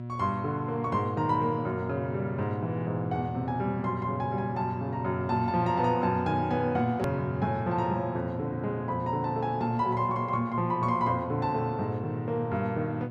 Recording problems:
mains hum; 60 Hz, harmonics up to 960 Hz, SNR 8 dB
edit click; at 7 s

